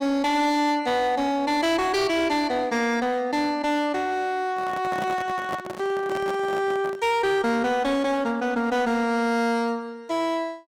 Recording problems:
distortion; hard clipping, signal-to-distortion ratio 10 dB
handling noise; from 4.5 to 7 s; peak -4 dB vs average level

